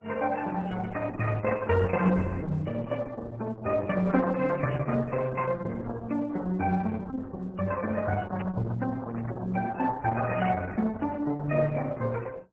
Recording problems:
lossy compression; MP3, then Opus, log-spectral distance 4 dB, nothing above 7.6 kHz
handling noise; from 8 to 11 s; peak -7 dB vs average level

